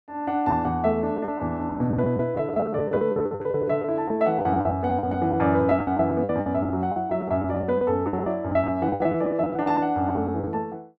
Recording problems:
lost packets; 15% of the sound replaced, filled with the last packet

